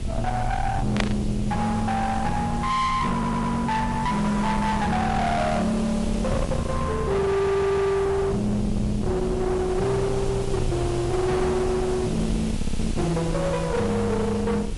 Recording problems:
lossy codec; MP3, log-spectral distance 2 dB, nothing above 11 kHz
distortion; soft clipping, signal-to-distortion ratio 8 dB
background hiss; slope -1 dB per octave, SNR 18 dB
rumble; below 350 Hz, SNR 6 dB
burst of static; at 1 s; peak +2 dB vs average level
audio stuttering; at 3 s, at 7.5 s and at 13 s

